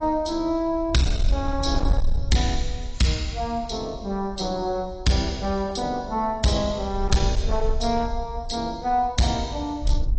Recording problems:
lossy codec; AAC, log-spectral distance 3 dB, nothing above 8 kHz
distortion; hard clipping, signal-to-distortion ratio 11 dB
wind on the microphone; below 62 Hz, SNR 5 dB

